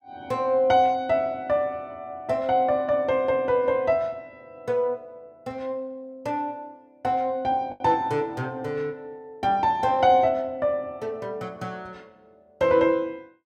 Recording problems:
lost packets; 0.7% of the sound replaced, filled with the last packet

